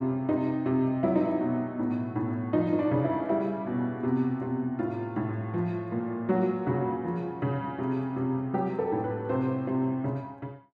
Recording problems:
none

